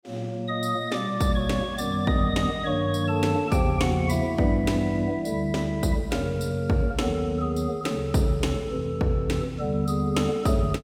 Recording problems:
none

